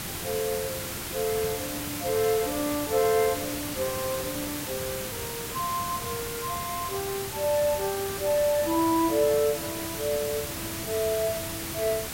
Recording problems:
hiss; slope -2 dB per octave, SNR 4 dB

